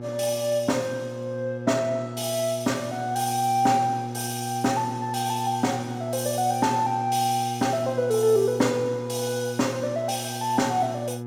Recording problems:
electrical hum; 60 Hz, harmonics up to 1.3 kHz, SNR 9 dB

